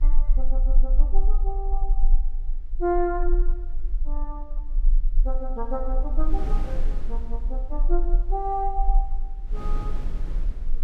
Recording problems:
low-frequency rumble; below 32 Hz, strongest tone 18 Hz, SNR -4 dB
wind on the microphone; below 230 Hz, SNR 8 dB

